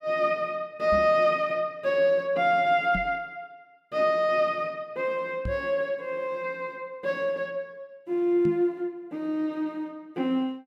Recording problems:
knock on the microphone; 4 times, first at 1 s; peak -3 dB vs average level

